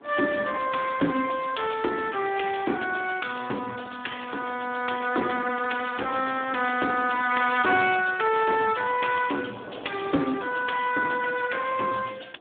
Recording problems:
phone line; 220 Hz to 2.9 kHz, Speex
wind noise; below 870 Hz, SNR 22 dB

